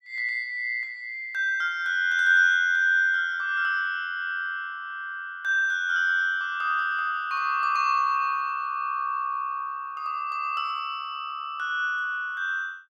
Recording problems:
none

